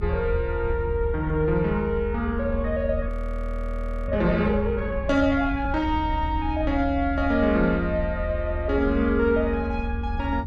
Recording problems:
low-frequency rumble; below 78 Hz, SNR 6 dB
frozen audio; at 3 s for 1 s

